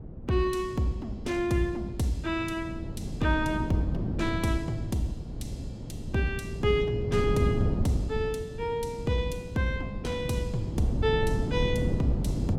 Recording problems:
wind noise; below 220 Hz, SNR 4 dB

